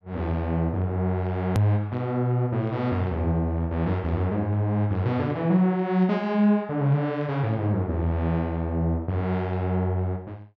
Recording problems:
hard cut with a click; at 1.5 s

